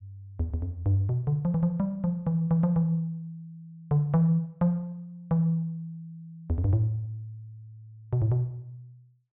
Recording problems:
treble cut off; nothing above 4 kHz

